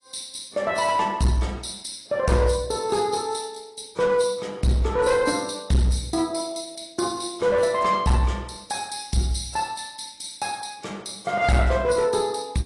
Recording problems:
lossy compression; AAC, log-spectral distance 6 dB, nothing above 10.1 kHz
distortion; hard clipping, uneven, signal-to-distortion ratio 11 dB

